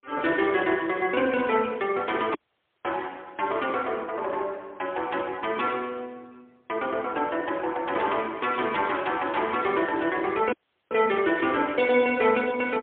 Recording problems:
telephone audio; 280 Hz to 3.4 kHz, AMR-NB, then MP3
audio cutting out; at 2.5 s for 0.5 s and at 11 s

